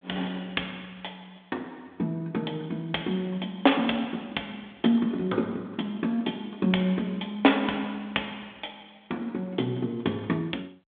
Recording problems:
phone line; 220 Hz to 3.6 kHz, G.726

